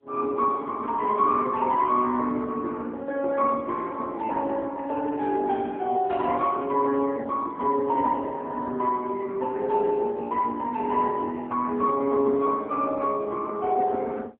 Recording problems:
phone line; 240 Hz to 3.8 kHz, AMR-NB

